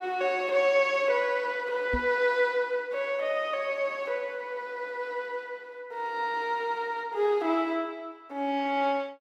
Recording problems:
knock on the microphone; at 2 s; peak 0 dB vs average level

